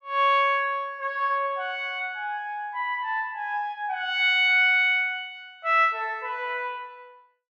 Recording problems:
none

